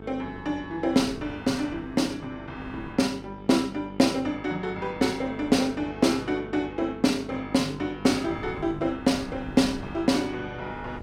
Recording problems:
hum; 50 Hz, harmonics up to 1.8 kHz, SNR 16 dB
wind on the microphone; below 320 Hz, SNR 20 dB

